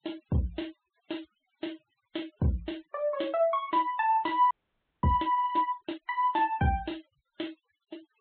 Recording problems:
treble missing; nothing above 4 kHz
noise reduction artefacts; signal-to-artefact ratio 27 dB
audio freezing; at 4.5 s for 0.5 s

